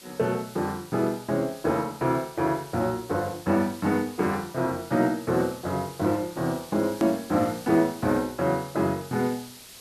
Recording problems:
background hiss; SNR 18 dB
click at an edit; at 7 s

